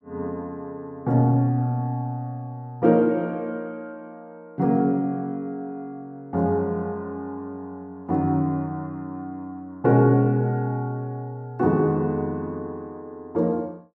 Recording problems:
none

